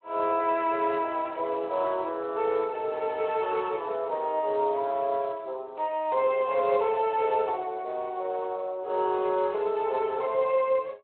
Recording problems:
telephone audio; 340 Hz to 3.3 kHz, Speex

